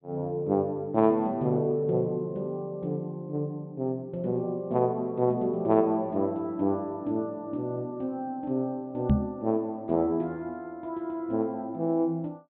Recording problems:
treble cut off; nothing above 4 kHz
microphone thump; at 9 s; peak +9 dB vs average level

